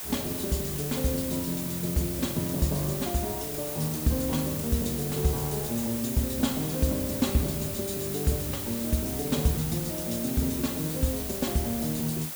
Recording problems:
hiss; slope -1 dB per octave, SNR 4 dB

